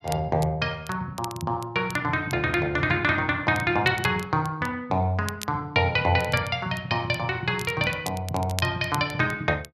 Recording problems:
crackling; vinyl, SNR 17 dB

